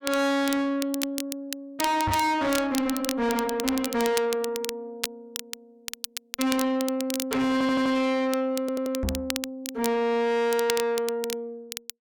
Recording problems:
distorted audio; soft clipping, signal-to-distortion ratio 6 dB
crackle; vinyl, SNR 9 dB
microphone bump; at 2 s and at 9 s; peak +2 dB vs average level
audio stuttering; at 7.5 s and at 8.5 s

